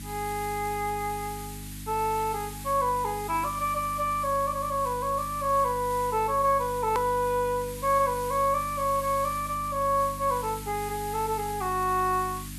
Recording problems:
hum; 50 Hz, harmonics up to 300 Hz, SNR 14 dB
background hiss; SNR 14 dB
edit click; at 7 s

